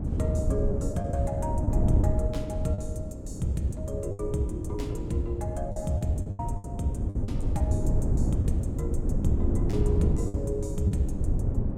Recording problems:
hum; 60 Hz, harmonics up to 600 Hz, SNR 14 dB
wind on the microphone; below 150 Hz, SNR -3 dB
packet loss; 7% of the sound replaced, filled with the last packet

